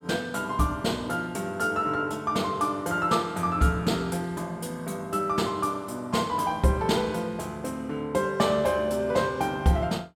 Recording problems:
none

